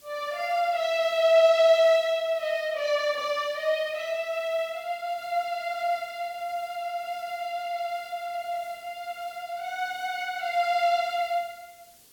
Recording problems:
background hiss; SNR 27 dB

